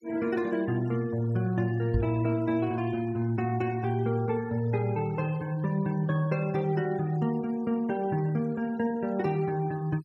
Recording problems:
noise reduction artefacts; signal-to-artefact ratio 24 dB
knock on the microphone; at 2 s; peak +3 dB vs average level

